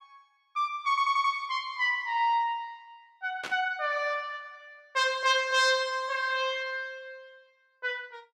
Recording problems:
audio stuttering; at 1 s
burst of static; at 3.5 s; peak -5 dB vs average level

